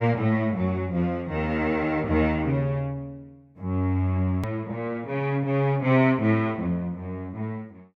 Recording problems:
click at an edit; at 4.5 s

